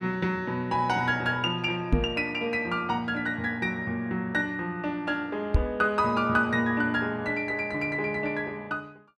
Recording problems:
microphone bump; at 2 s and at 5.5 s; peak +9 dB vs average level

